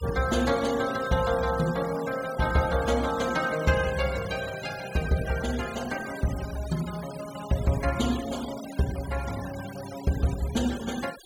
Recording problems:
noise reduction artefacts; signal-to-artefact ratio 14 dB

